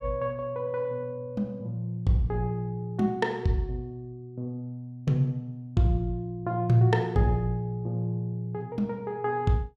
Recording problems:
none

